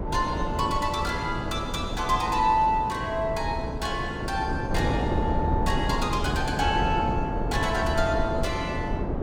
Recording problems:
hum; 60 Hz, harmonics up to 660 Hz, SNR 19 dB
wind on the microphone; below 380 Hz, SNR 3 dB

